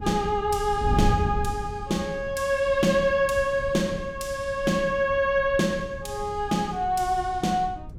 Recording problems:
wind noise; below 130 Hz, SNR 11 dB

